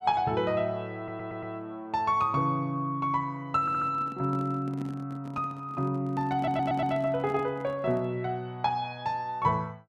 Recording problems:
stutter; at 1 s, at 3.5 s and at 6.5 s
microphone handling noise; from 3.5 to 8 s; peak -8 dB vs average level

